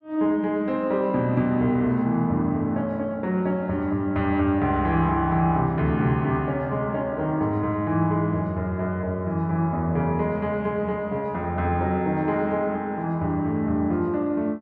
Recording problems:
none

